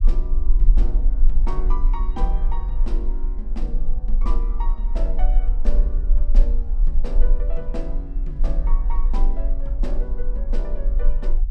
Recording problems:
low-frequency rumble; below 36 Hz, strongest tone 20 Hz, SNR -12 dB

